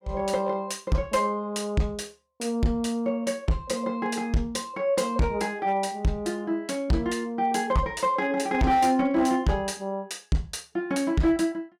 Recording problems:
distortion; hard clipping, uneven, signal-to-distortion ratio 10 dB

